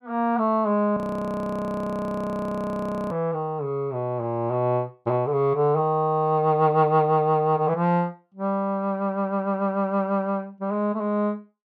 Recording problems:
frozen audio; at 1 s for 2 s

